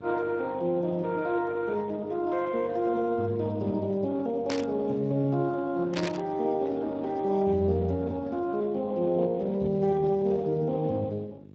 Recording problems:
lossy compression; Speex, log-spectral distance 2 dB
electrical hum; 50 Hz, harmonics up to 600 Hz, SNR 22 dB
static burst; at 4.5 s and at 6 s; peak 0 dB vs average level

